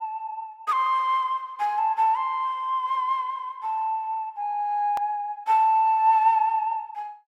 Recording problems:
hard cut with a click; at 5 s

